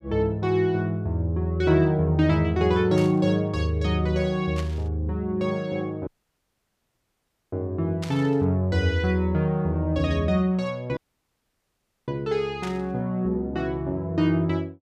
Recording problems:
static burst; 4 times, first at 3 s; peak -8 dB vs average level
audio cutting out; at 6 s for 1.5 s and at 11 s for 1 s

